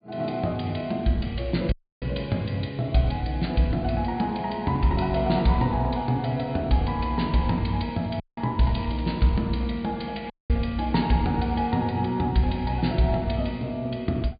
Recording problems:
treble cut off; nothing above 4.8 kHz
dropout; at 1.5 s, at 8 s and at 10 s
crackle; at 8.5 s; loose cable, SNR 24 dB

